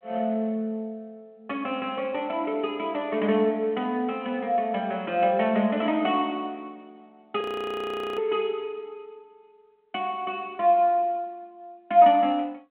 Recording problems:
phone line; 170 Hz to 3.5 kHz, G.726
frozen audio; at 7.5 s for 1 s

